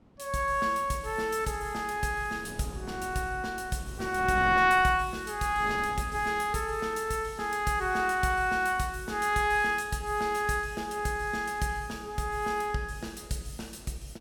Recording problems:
wind on the microphone; below 380 Hz, SNR 16 dB

